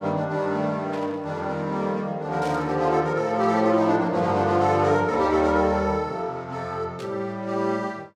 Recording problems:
static burst; at 1 s, at 2.5 s and at 7 s; peak -12 dB vs average level

